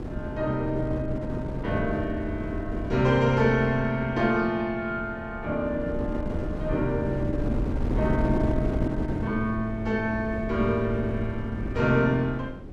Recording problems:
hum; 50 Hz, harmonics up to 550 Hz, SNR 24 dB
wind on the microphone; below 300 Hz, SNR 5 dB

